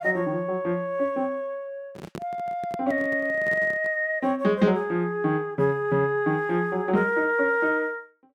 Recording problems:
microphone handling noise; from 2 to 4 s; peak -7 dB vs average level

